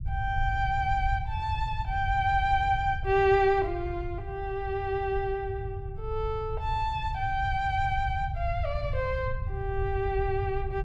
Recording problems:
rumble; below 100 Hz, SNR 6 dB

